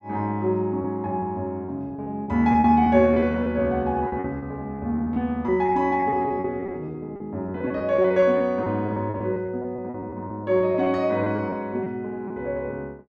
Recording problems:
packet loss; 12% of the sound replaced, filled with repeated pitch periods

